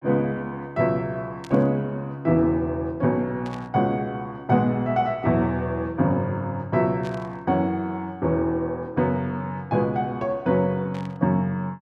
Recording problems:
static burst; 4 times, first at 1.5 s; peak -13 dB vs average level

